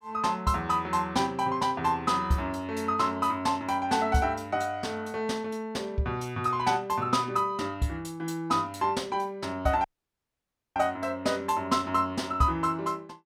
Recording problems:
audio cutting out; at 10 s for 1 s

